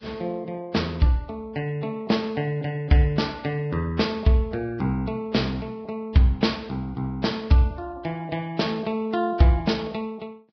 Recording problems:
lossy compression; Vorbis, log-spectral distance 3 dB, nothing above 5.3 kHz

